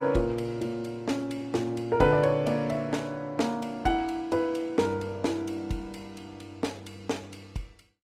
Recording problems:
codec artefacts; Opus, log-spectral distance 3 dB, nothing above 18.3 kHz

